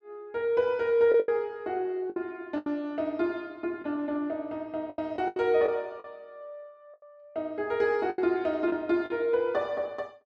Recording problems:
packet loss; 7% of the sound replaced, filled with the last packet

